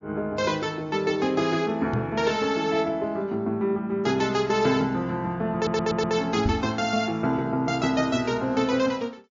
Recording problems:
lossy codec; MP3, log-spectral distance 2 dB, nothing above 6.9 kHz
knock on the microphone; at 2 s and at 6.5 s; peak +1 dB vs average level
audio stuttering; at 5.5 s

